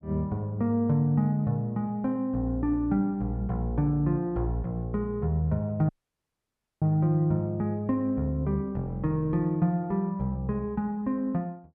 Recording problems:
audio cutting out; at 6 s for 1 s

